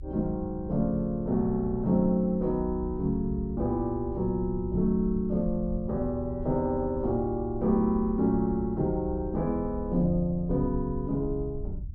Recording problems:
rumble; below 74 Hz, SNR 11 dB

